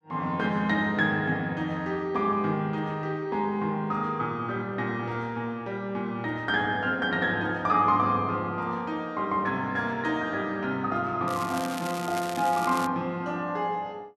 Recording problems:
crackling; from 11 to 13 s; loose cable, SNR 12 dB

